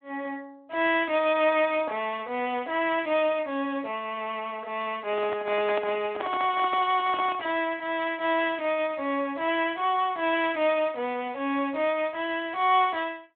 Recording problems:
telephone audio; 320 Hz to 3.5 kHz, Speex
microphone handling noise; from 5 to 7.5 s; peak -2 dB vs average level

